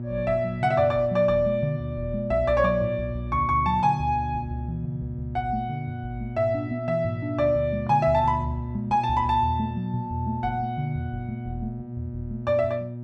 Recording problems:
hum; 60 Hz, harmonics up to 600 Hz, SNR 9 dB

